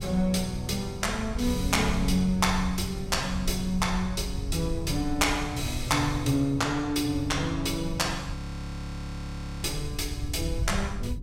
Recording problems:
wind on the microphone; below 88 Hz, SNR 9 dB
audio freezing; at 8.5 s for 1.5 s

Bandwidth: 16.5 kHz